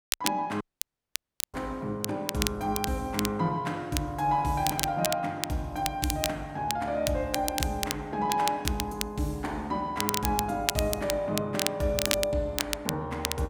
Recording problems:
crackling; vinyl, SNR 3 dB
audio cutting out; at 0.5 s for 1 s

